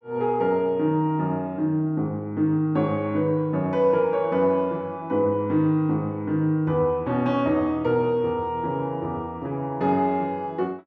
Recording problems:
none

